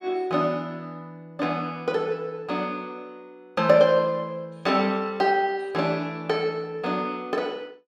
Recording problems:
none

